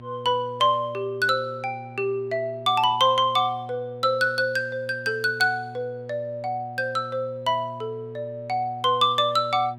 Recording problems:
hum; 60 Hz, harmonics up to 960 Hz, SNR 18 dB

